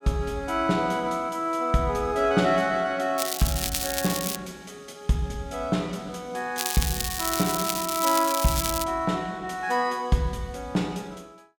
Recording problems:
crackling; from 3 to 4.5 s and from 6.5 to 9 s; loose cable, SNR 2 dB

